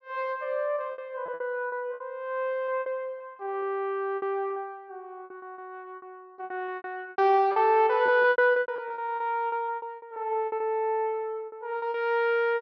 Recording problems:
treble missing; nothing above 5.7 kHz
lost packets; 14% of the sound replaced, filled with repeated pitch periods

